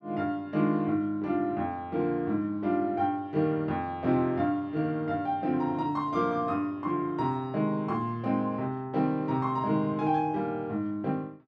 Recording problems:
none

